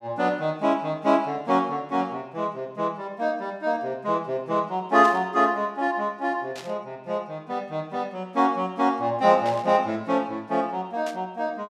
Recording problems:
burst of static; 4 times, first at 5 s; peak -9 dB vs average level

